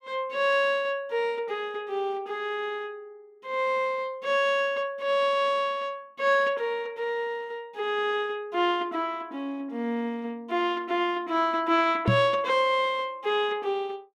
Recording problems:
microphone bump; at 12 s; peak +7 dB vs average level

